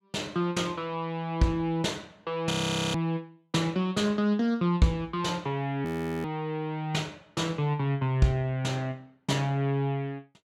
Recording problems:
audio freezing; at 2.5 s and at 6 s

